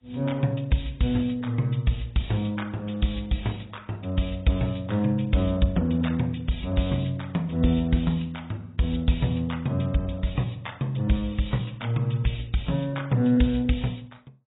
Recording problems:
codec artefacts; AAC, log-spectral distance 6 dB, nothing above 3.8 kHz

